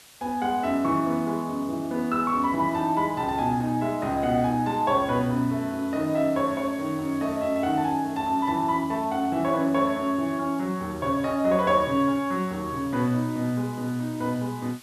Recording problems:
hiss; slope 0 dB per octave, SNR 23 dB

